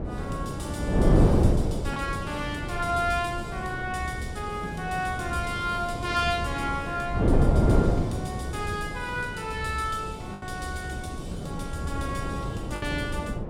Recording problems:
wind on the microphone; below 340 Hz, SNR -2 dB
lost packets; 1.2% of the sound replaced, filled with the last packet

